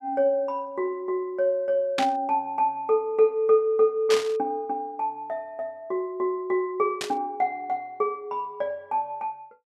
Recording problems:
burst of static; at 2 s, at 4 s and at 7 s; peak +2 dB vs average level

